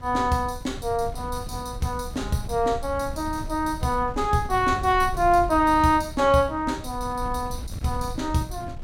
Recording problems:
wind noise; below 110 Hz, SNR 12 dB

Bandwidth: 16 kHz